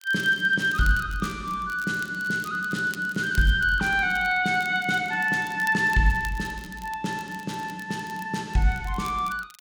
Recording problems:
crackling; vinyl, SNR 22 dB

